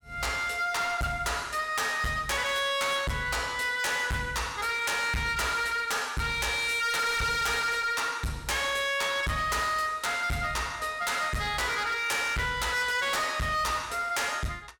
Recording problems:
distortion; hard clipping, uneven, signal-to-distortion ratio 7 dB

